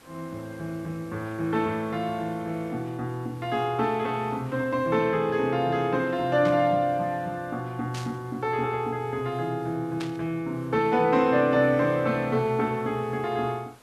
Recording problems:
background hiss; slope -4 dB per octave, SNR 27 dB
burst of static; at 6.5 s, at 8 s and at 10 s; peak -7 dB vs average level

